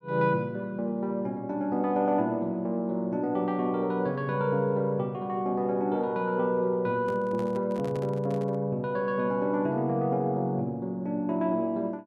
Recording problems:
microphone handling noise; from 7 to 8.5 s; peak -9 dB vs average level

